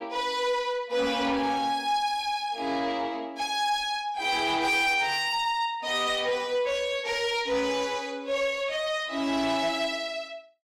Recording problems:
distortion; soft clipping, signal-to-distortion ratio 11 dB

